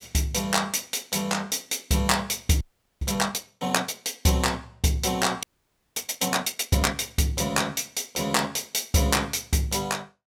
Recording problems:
audio freezing; at 2.5 s and at 5.5 s for 0.5 s

